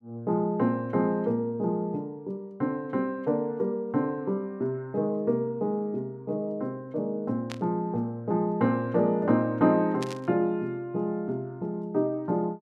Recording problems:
static burst; at 7.5 s and at 10 s; peak -5 dB vs average level

